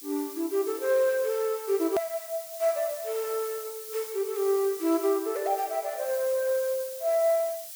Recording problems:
hiss; SNR 12 dB
hard cut with a click; at 2 s

